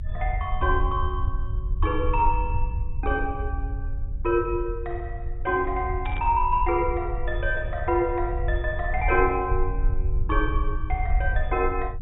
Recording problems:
low-pass filter; nothing above 4 kHz
rumble; below 68 Hz, SNR 3 dB
static burst; at 6 s; peak -9 dB vs average level

